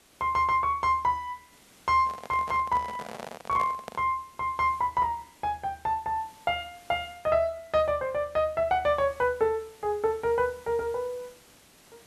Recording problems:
background hiss; slope -2 dB per octave, SNR 27 dB
microphone handling noise; from 2 to 4 s; peak -5 dB vs average level

